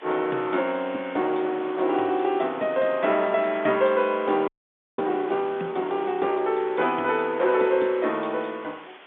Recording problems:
phone line; 240 Hz to 3.5 kHz, G.711
hiss; SNR 20 dB
frozen audio; at 4.5 s for 0.5 s

